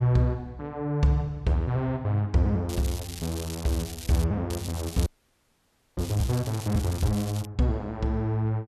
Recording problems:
crackle; from 2.5 to 4 s and from 4.5 to 7.5 s; loose cable, SNR 13 dB
audio freezing; at 5 s for 1 s

